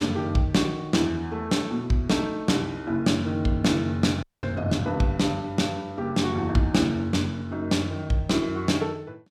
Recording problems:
frozen audio; at 4 s

